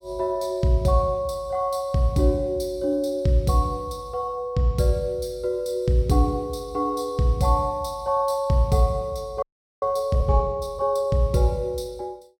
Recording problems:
audio freezing; at 9.5 s

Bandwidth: 17 kHz